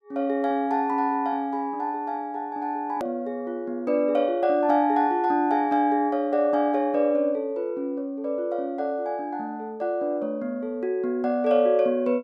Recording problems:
click at an edit; at 3 s

